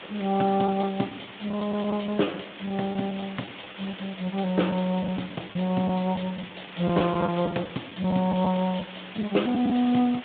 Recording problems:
telephone audio; 190 Hz to 3.6 kHz, Speex
background hiss; SNR 14 dB
lost packets; 6% of the sound replaced, filled with the last packet

